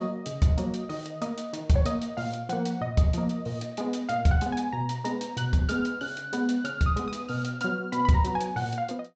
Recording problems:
treble missing; nothing above 8 kHz

